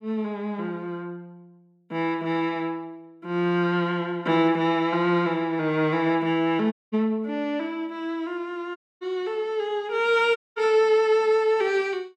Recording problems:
audio cutting out; at 6.5 s, at 9 s and at 10 s

